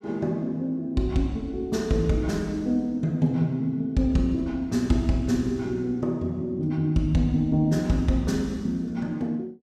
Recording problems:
none

